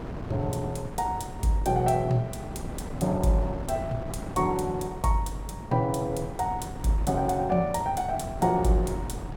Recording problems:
wind noise; below 420 Hz, SNR 10 dB

